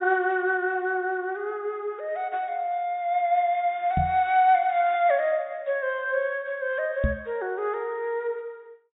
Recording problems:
treble missing; nothing above 4 kHz
microphone thump; at 4 s and at 7 s; peak +4 dB vs average level

